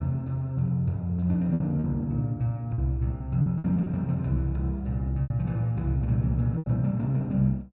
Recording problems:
lost packets; 8% of the sound replaced, filled with repeated pitch periods

